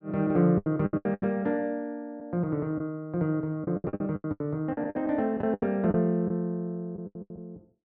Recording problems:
lost packets; 15% of the sound replaced, filled with the last packet

